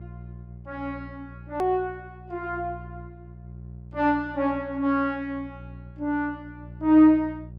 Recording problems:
electrical hum; 60 Hz, harmonics up to 540 Hz, SNR 18 dB
click at an edit; at 1.5 s

